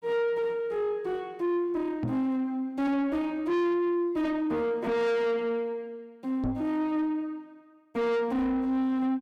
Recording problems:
distorted audio; soft clipping, signal-to-distortion ratio 7 dB
knock on the microphone; at 2 s and at 6.5 s; peak +1 dB vs average level

